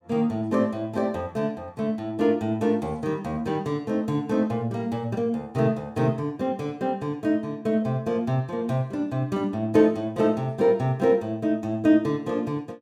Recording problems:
none

